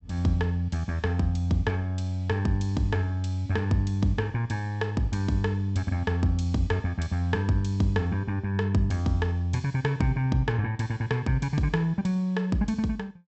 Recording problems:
low-pass filter; nothing above 7.9 kHz

